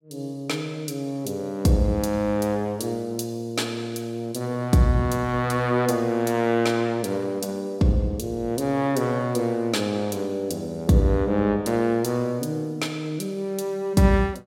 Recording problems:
none

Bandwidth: 16 kHz